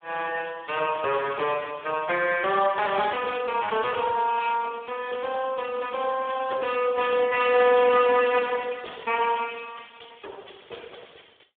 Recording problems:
phone line; 340 Hz to 3.4 kHz, Speex

